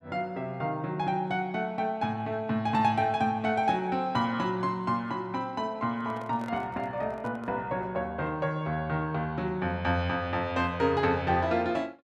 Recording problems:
microphone handling noise; from 6 to 7.5 s; peak -12 dB vs average level

